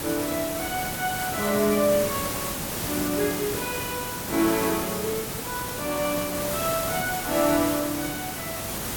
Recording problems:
background hiss; slope -3 dB per octave, SNR 2 dB

